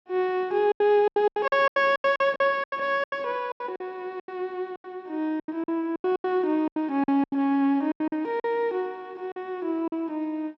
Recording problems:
lost packets; 16% of the sound replaced, filled with silence

